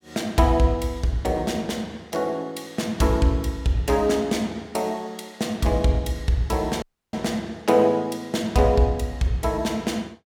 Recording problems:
audio cutting out; at 7 s

